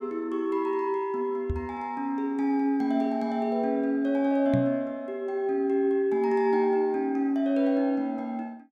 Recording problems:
knock on the microphone; at 1.5 s and at 4.5 s; peak +2 dB vs average level

